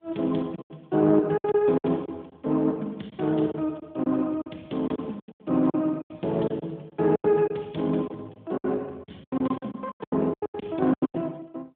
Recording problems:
phone line; 170 Hz to 3.6 kHz, AMR-NB
packet loss; 15% of the sound replaced, filled with silence

